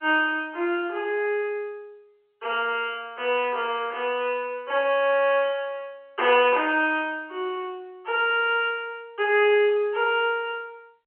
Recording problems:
telephone audio; 320 Hz to 3.2 kHz, G.711

